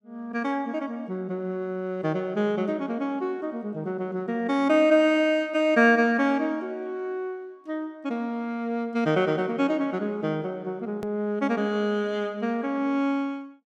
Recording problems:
edit click; at 11 s

